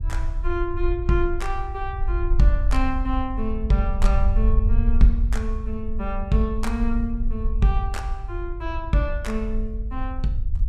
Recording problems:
rumble; below 54 Hz, SNR 0 dB

